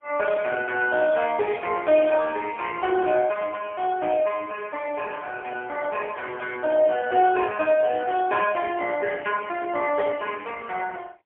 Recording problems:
phone line; 300 Hz to 3.3 kHz, AMR-NB, then MP3

